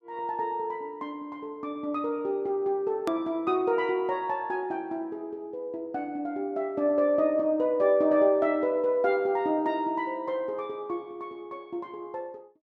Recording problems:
click at an edit; at 3 s

